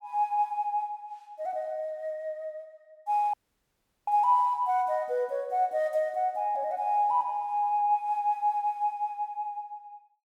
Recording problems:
audio cutting out; at 3.5 s for 0.5 s

